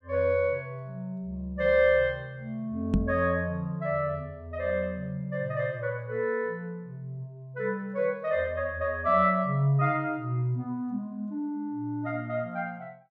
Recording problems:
microphone thump; at 3 s; peak +8 dB vs average level

